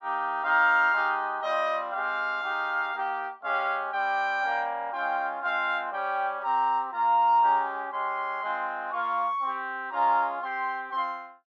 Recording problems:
none

